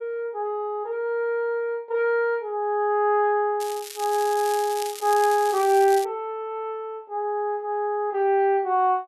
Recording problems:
crackling; from 3.5 to 6 s; loose cable, SNR 13 dB

